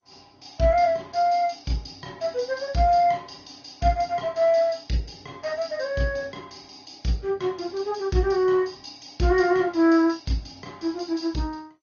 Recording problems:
codec artefacts; Opus, then MP2, log-spectral distance 5 dB, nothing above 6.5 kHz

